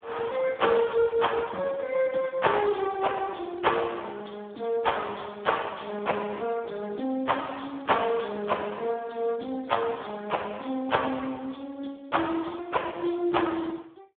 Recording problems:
telephone audio; 220 Hz to 3.5 kHz, Speex

